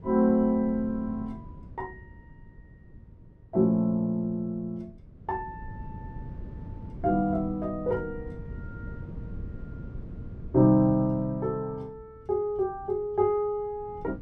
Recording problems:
wind noise; below 170 Hz, SNR 16 dB

